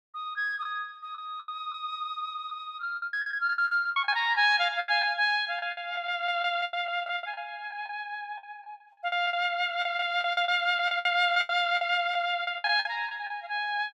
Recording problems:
lost packets; 13% of the sound replaced, filled with the last packet

